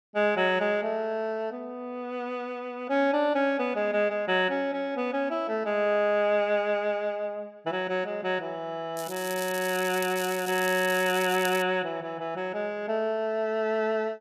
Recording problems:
crackle; from 9 to 12 s; loose cable, SNR 11 dB

